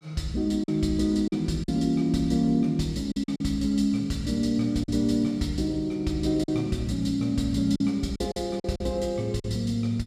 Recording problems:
lost packets; 6% of the sound replaced, filled with silence

